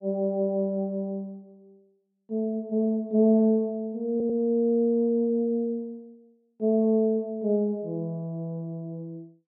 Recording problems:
audio stuttering; at 4 s

